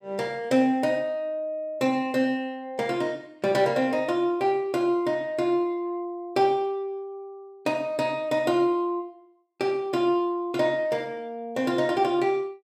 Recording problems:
none

